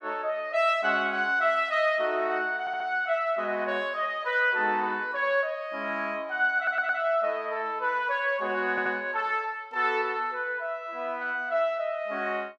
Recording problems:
audio stuttering; at 2.5 s, at 6.5 s and at 8.5 s

